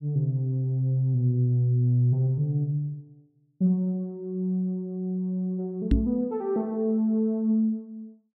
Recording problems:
knock on the microphone; at 6 s; peak +7 dB vs average level

